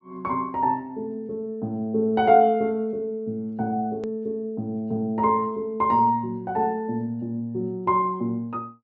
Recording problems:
treble missing; nothing above 8 kHz
click at an edit; at 4 s

